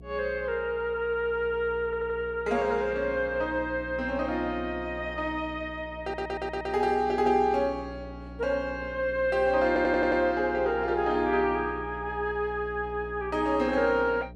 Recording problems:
hum; 60 Hz, harmonics up to 660 Hz, SNR 17 dB
audio stuttering; at 2 s, at 6 s and at 9.5 s

